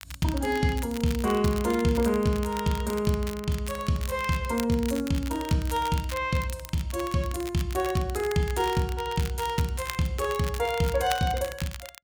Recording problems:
crackle; vinyl, SNR 14 dB

